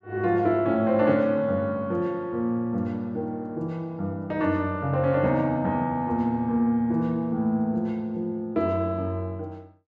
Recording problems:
none

